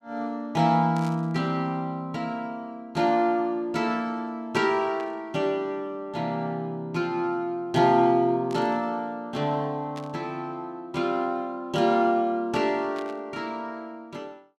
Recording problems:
burst of static; 5 times, first at 1 s; peak -12 dB vs average level

